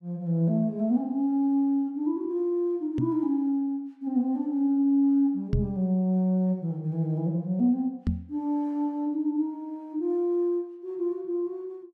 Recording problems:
microphone bump; at 3 s, at 5.5 s and at 8 s; peak +4 dB vs average level

